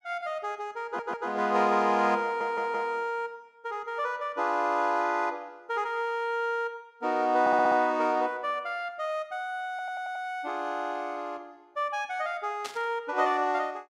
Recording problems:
audio stuttering; 4 times, first at 1 s
static burst; at 13 s; peak -5 dB vs average level

